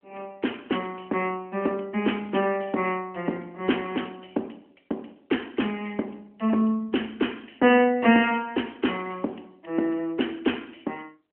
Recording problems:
telephone audio; 220 Hz to 3.2 kHz, AMR-NB

